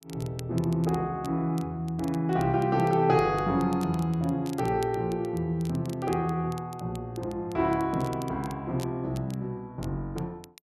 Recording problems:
crackle; vinyl, SNR 22 dB

